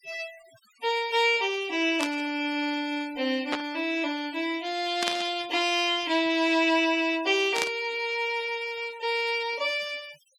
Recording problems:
noise reduction artefacts; signal-to-artefact ratio 20 dB
burst of static; 4 times, first at 2 s; peak +2 dB vs average level

